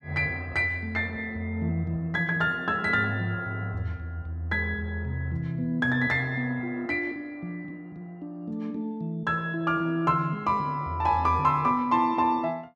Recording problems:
none

